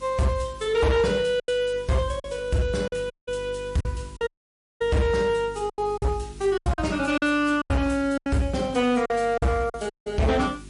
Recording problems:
lossy codec; MP3, log-spectral distance 3 dB, nothing above 10.4 kHz
distortion; hard clipping, signal-to-distortion ratio 10 dB
electrical hum; 50 Hz, harmonics up to 400 Hz, SNR 20 dB
hiss; slope +1 dB per octave, SNR 26 dB
packet loss; 8% of the sound replaced, filled with silence
dropout; at 3 s, at 4.5 s for 0.5 s and at 10 s

